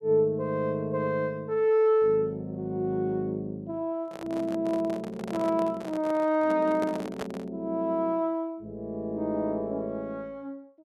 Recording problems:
microphone handling noise; from 4 to 7.5 s; peak -3 dB vs average level

